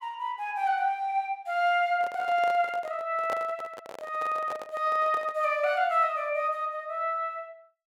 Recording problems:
handling noise; from 2 to 5.5 s; peak -4 dB vs average level

